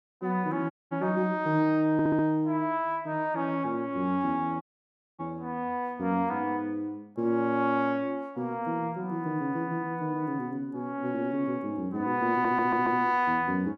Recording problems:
dropout; at 0.5 s and at 4.5 s for 0.5 s
audio stuttering; at 2 s and at 12 s

